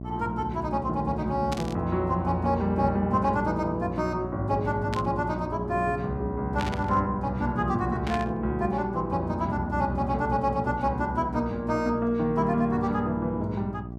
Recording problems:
electrical hum; 60 Hz, harmonics up to 780 Hz, SNR 9 dB
static burst; 4 times, first at 1.5 s; peak -3 dB vs average level

